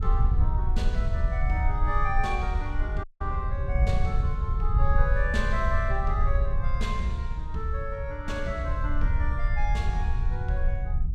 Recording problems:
wind on the microphone; below 66 Hz, SNR -3 dB
dropout; at 3 s

